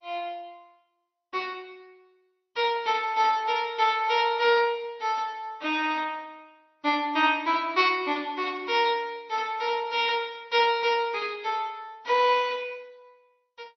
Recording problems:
lossy compression; MP3, then MP2, log-spectral distance 3 dB, nothing above 5.7 kHz

